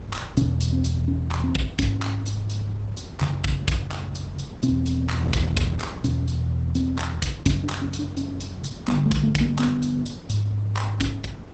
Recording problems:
lossy compression; Opus, log-spectral distance 3 dB, nothing above 8 kHz
wind noise; below 320 Hz, SNR 13 dB

